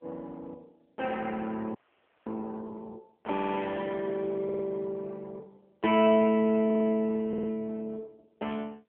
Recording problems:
telephone audio; 260 Hz to 3.3 kHz, AMR-NB
audio freezing; at 2 s for 0.5 s
audio stuttering; 4 times, first at 3.5 s

